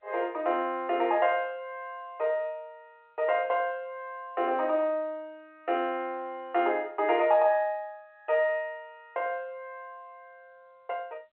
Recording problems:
telephone audio; 300 Hz to 3.4 kHz, G.711

